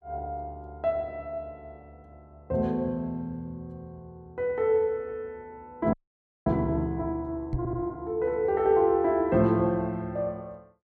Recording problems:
frozen audio; at 6 s for 0.5 s
microphone thump; at 7.5 s; peak +1 dB vs average level
audio stuttering; at 7.5 s

